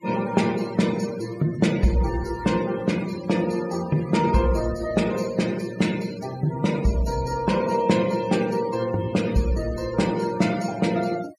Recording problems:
denoising artefacts; signal-to-artefact ratio 15 dB

